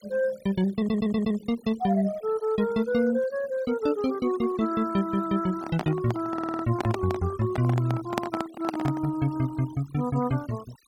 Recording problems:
noise reduction artefacts; signal-to-artefact ratio 21 dB
audio stuttering; at 1 s and at 6.5 s
microphone handling noise; from 5.5 to 9 s; peak +4 dB vs average level

